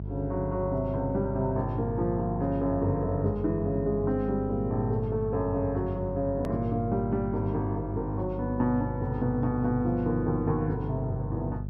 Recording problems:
hum; 50 Hz, harmonics up to 450 Hz, SNR 7 dB
hard cut with a click; at 6.5 s

